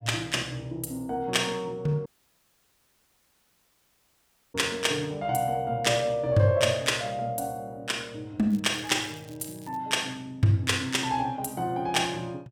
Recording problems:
dropout; at 2 s for 2.5 s
crackling; from 8.5 to 10 s; loose cable, SNR 24 dB

